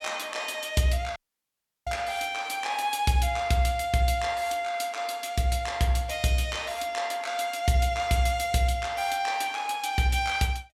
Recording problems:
audio cutting out; at 1 s for 0.5 s

